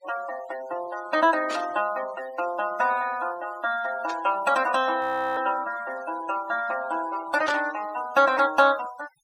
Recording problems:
denoising artefacts; signal-to-artefact ratio 17 dB
burst of static; at 1.5 s, at 4 s and at 7.5 s; peak -4 dB vs average level
frozen audio; at 5 s

